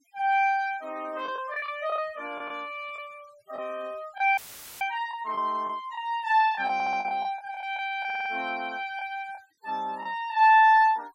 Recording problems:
denoising artefacts; signal-to-artefact ratio 28 dB
lost packets; 6% of the sound replaced, filled with the last packet
audio cutting out; at 4.5 s; filled with static
audio stuttering; at 6.5 s and at 8 s

